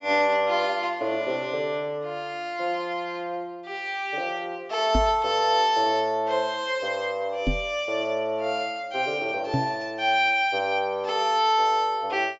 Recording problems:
treble missing; nothing above 8 kHz
knock on the microphone; at 5 s, at 7.5 s and at 9.5 s; peak +3 dB vs average level

